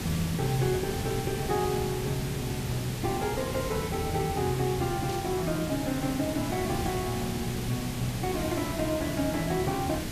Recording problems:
electrical hum; 60 Hz, harmonics up to 1.6 kHz, SNR 24 dB
background hiss; SNR 4 dB
static burst; at 5 s; peak -8 dB vs average level

